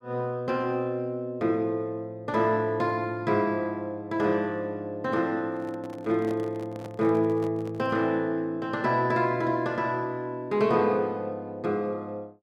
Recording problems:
microphone handling noise; from 5.5 to 8 s; peak -9 dB vs average level

